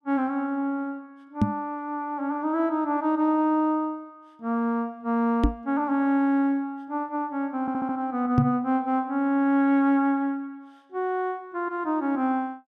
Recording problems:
microphone thump; at 1.5 s, at 5.5 s and at 8.5 s; peak +8 dB vs average level
audio stuttering; at 7.5 s

